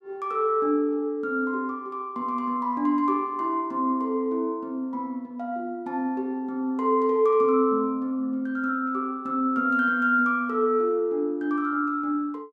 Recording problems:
none

